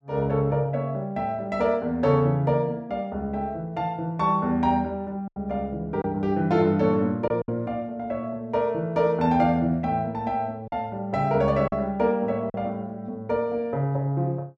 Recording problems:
packet loss; 2% of the sound replaced, filled with silence

